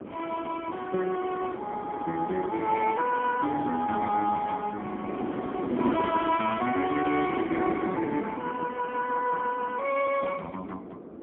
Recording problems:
phone line; 240 Hz to 2.9 kHz, AMR-NB, then MP3
wind on the microphone; below 460 Hz, SNR 8 dB

